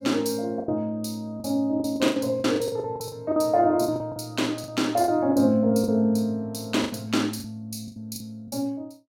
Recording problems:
packet loss; 13% of the sound replaced, filled with the last packet

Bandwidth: 16.5 kHz